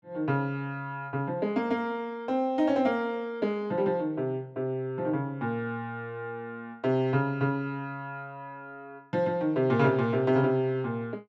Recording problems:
none

